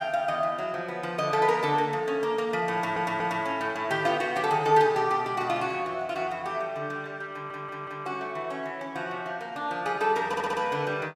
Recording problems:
audio stuttering; at 2.5 s, at 7.5 s and at 10 s

